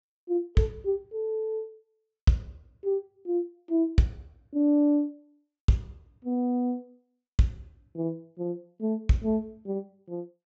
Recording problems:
low-pass filter; nothing above 8 kHz

